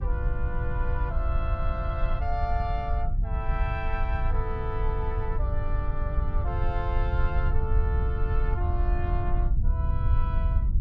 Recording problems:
hum; 50 Hz, harmonics up to 350 Hz, SNR 14 dB
low-frequency rumble; below 74 Hz, SNR -6 dB

